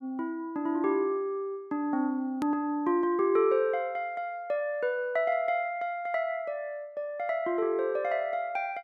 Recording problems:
click at an edit; at 2.5 s

